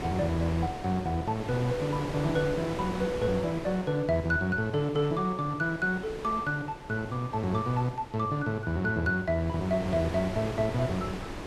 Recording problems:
wind on the microphone; below 1.2 kHz, SNR 10 dB

